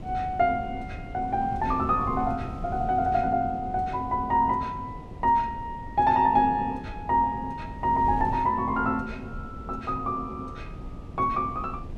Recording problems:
wind noise; below 210 Hz, SNR 13 dB

